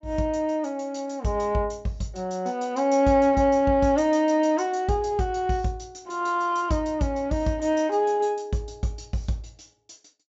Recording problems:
low-pass filter; nothing above 8 kHz

